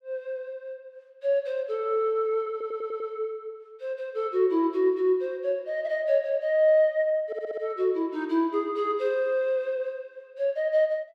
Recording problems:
audio stuttering; at 2.5 s and at 7.5 s

